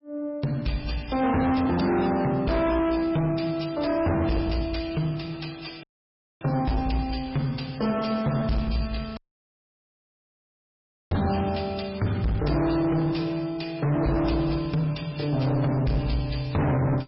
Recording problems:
lossy codec; MP3, log-spectral distance 5 dB, nothing above 5.2 kHz
distorted audio; soft clipping, signal-to-distortion ratio 7 dB
dropout; at 6 s for 0.5 s and at 9 s for 2 s

